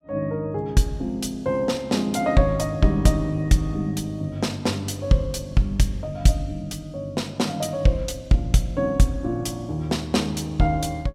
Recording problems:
none

